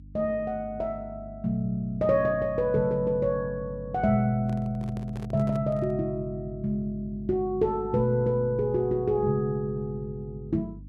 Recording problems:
hum; 50 Hz, harmonics up to 300 Hz, SNR 16 dB
microphone handling noise; from 4.5 to 6 s; peak -9 dB vs average level

